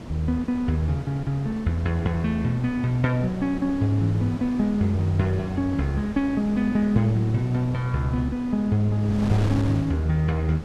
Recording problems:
wind on the microphone; below 470 Hz, SNR 12 dB

